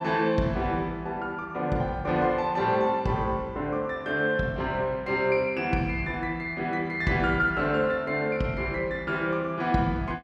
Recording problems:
none

